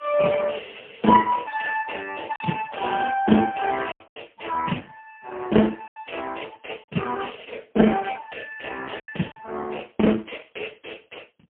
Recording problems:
phone line; 150 Hz to 3.3 kHz, AMR-NB, then MP3
packet loss; 3% of the sound replaced, filled with silence

